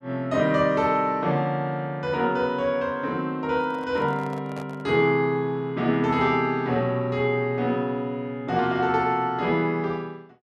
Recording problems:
microphone handling noise; from 3.5 to 5 s; peak -11 dB vs average level

